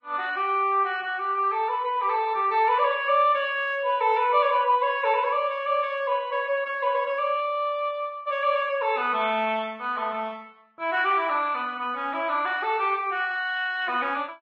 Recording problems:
lossy compression; Vorbis, log-spectral distance 2 dB

